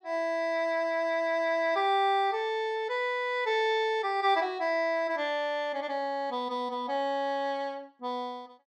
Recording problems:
none

